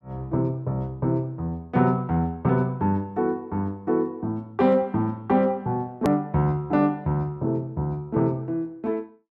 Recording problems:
edit click; at 6 s

